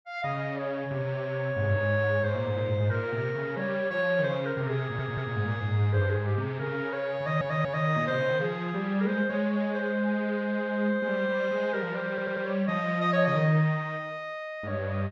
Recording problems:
stutter; at 5 s, at 7 s and at 12 s

